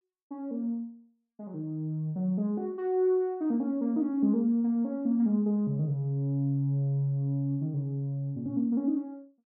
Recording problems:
none

